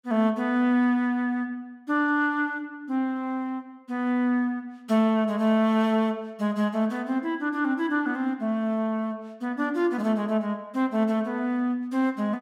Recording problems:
none

